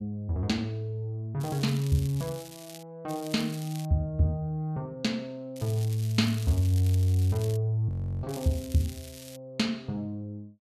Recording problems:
crackle; 4 times, first at 1.5 s; loose cable, SNR 16 dB
audio freezing; at 8 s

